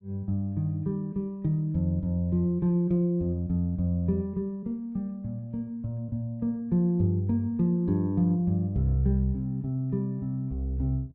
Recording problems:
none

